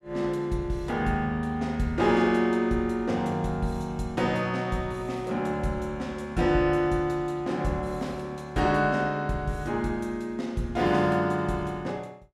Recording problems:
none

